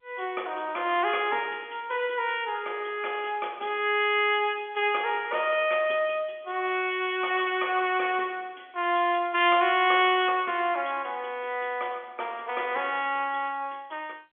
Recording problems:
phone line; 300 Hz to 3.4 kHz, G.711

